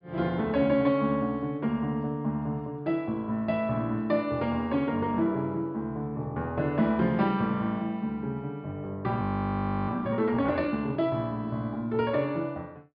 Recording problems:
treble missing; nothing above 5.5 kHz
audio freezing; at 9 s for 0.5 s

